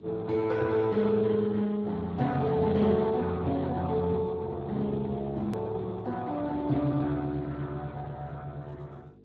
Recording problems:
codec artefacts; Speex, log-spectral distance 3 dB, nothing above 13.1 kHz
hum; 50 Hz, harmonics up to 550 Hz, SNR 25 dB
edit click; at 5.5 s

